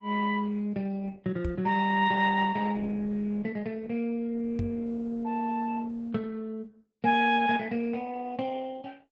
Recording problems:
lossy codec; Opus, log-spectral distance 3 dB
microphone thump; at 1.5 s and at 4.5 s; peak +1 dB vs average level

